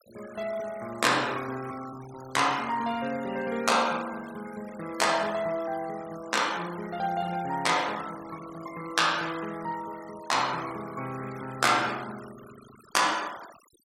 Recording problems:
noise reduction artefacts; signal-to-artefact ratio 18 dB

